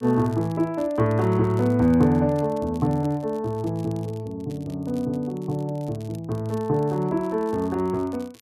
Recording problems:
crackling; vinyl, SNR 28 dB

